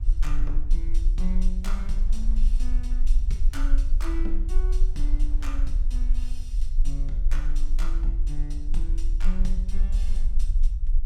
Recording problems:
rumble; below 36 Hz, strongest tone 22 Hz, SNR -11 dB
wind noise; below 250 Hz, SNR 18 dB

